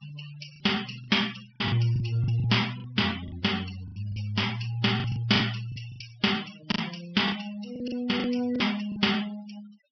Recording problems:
treble missing; nothing above 5.5 kHz
noise reduction artefacts; signal-to-artefact ratio 15 dB
packet loss; 11% of the sound replaced, filled with the last packet

